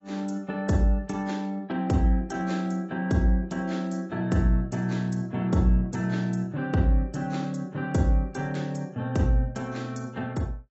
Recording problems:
lossy codec; AAC, log-spectral distance 2 dB, nothing above 7.8 kHz

